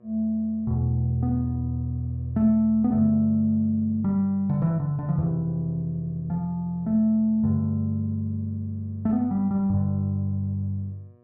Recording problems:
electrical hum; 60 Hz, harmonics up to 1.3 kHz, SNR 32 dB

